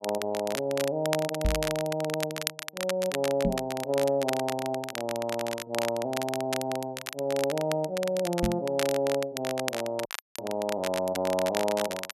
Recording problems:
crackling; vinyl, SNR 7 dB
microphone bump; at 1.5 s, at 3.5 s and at 8.5 s; peak +5 dB vs average level
audio cutting out; at 10 s

